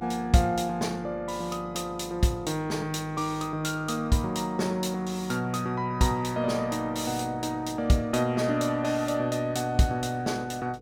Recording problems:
mains hum; 50 Hz, harmonics up to 500 Hz, SNR 20 dB

